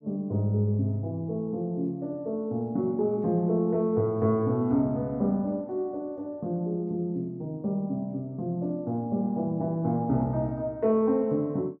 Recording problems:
none

